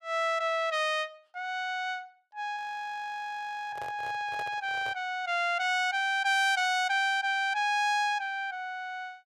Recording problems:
audio freezing; at 2.5 s for 1 s
microphone handling noise; from 3.5 to 5 s; peak -9 dB vs average level

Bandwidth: 15 kHz